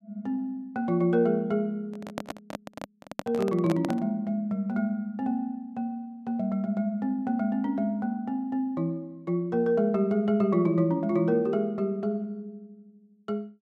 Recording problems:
handling noise; from 2 to 4 s; peak -1 dB vs average level

